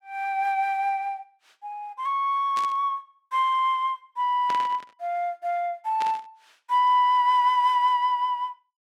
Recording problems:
static burst; at 2.5 s, at 4.5 s and at 6 s; peak -7 dB vs average level

